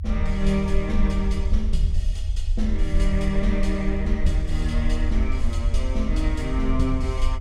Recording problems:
rumble; below 58 Hz, SNR -2 dB

